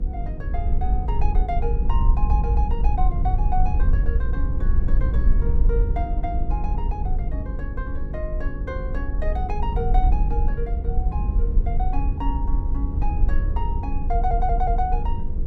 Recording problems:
hum; 50 Hz, harmonics up to 500 Hz, SNR 5 dB
low-frequency rumble; below 58 Hz, SNR -7 dB
audio stuttering; at 14 s

